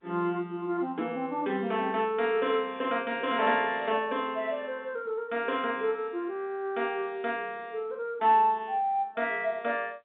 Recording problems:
phone line; 130 Hz to 3.8 kHz, G.711

